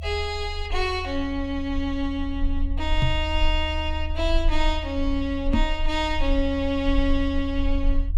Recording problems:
low-frequency rumble; below 72 Hz, strongest tone 24 Hz, SNR 3 dB
microphone thump; at 3 s and at 5.5 s; peak +8 dB vs average level

